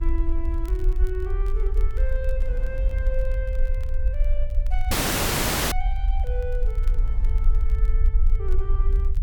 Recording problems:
rumble; below 48 Hz, strongest tone 20 Hz, SNR -11 dB
wind on the microphone; below 90 Hz, SNR 12 dB
crackling; vinyl, SNR 20 dB
audio cutting out; at 5 s for 1 s

